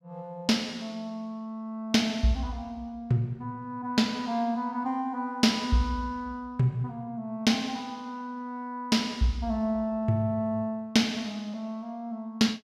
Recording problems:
none

